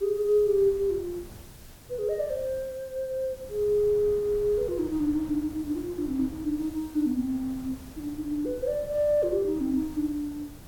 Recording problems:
hiss; slope +1 dB per octave, SNR 24 dB
wind on the microphone; below 310 Hz, SNR 19 dB

